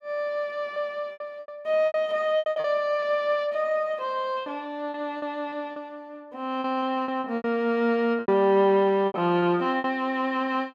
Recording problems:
packet loss; 10% of the sound replaced, filled with repeated pitch periods

